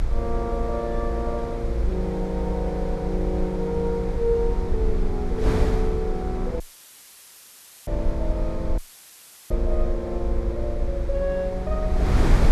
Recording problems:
rumble; below 56 Hz, SNR 2 dB
wind on the microphone; below 230 Hz, SNR 3 dB
dropout; at 6.5 s for 1.5 s and at 9 s for 0.5 s; filled with static

